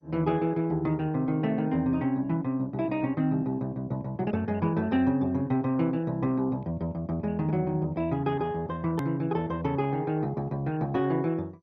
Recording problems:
codec artefacts; MP2, log-spectral distance 2 dB, nothing above 14.6 kHz
hard cut with a click; at 9 s

